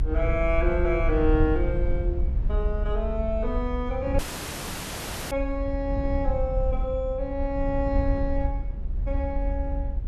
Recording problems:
rumble; below 66 Hz, SNR 0 dB
audio cutting out; at 4 s for 1 s

